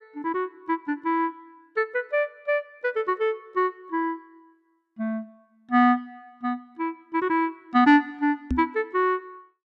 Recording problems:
knock on the microphone; at 8.5 s; peak +3 dB vs average level

